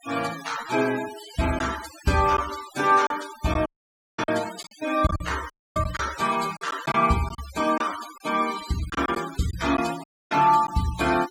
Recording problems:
noise reduction artefacts; signal-to-artefact ratio 13 dB
packet loss; 5% of the sound replaced, filled with silence
dropout; at 3.5 s for 0.5 s, at 5.5 s and at 10 s

